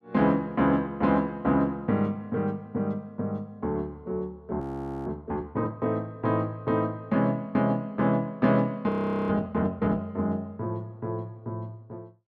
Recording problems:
frozen audio; at 4.5 s and at 9 s

